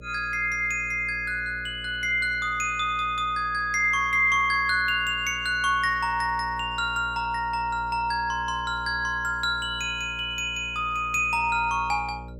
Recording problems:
hum; 60 Hz, harmonics up to 600 Hz, SNR 18 dB

